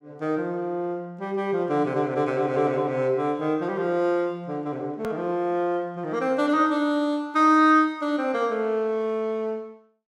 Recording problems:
hard cut with a click; at 5 s

